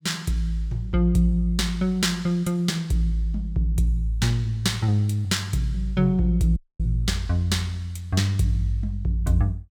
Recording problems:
dropout; at 6.5 s

